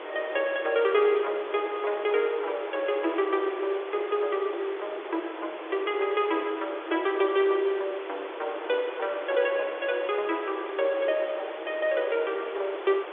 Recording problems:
phone line; 300 Hz to 3.6 kHz, G.711
hiss; SNR 10 dB

